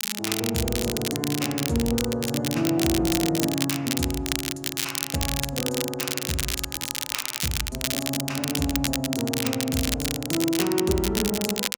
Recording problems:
crackle; vinyl, SNR 1 dB

